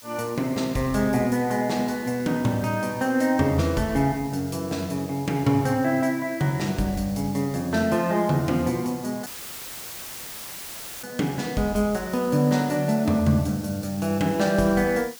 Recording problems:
background hiss; slope +3 dB per octave, SNR 19 dB
audio cutting out; at 9.5 s for 2 s; filled with static

